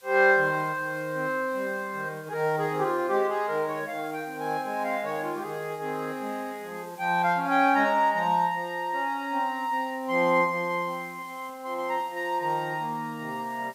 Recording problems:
background hiss; slope 0 dB per octave, SNR 25 dB

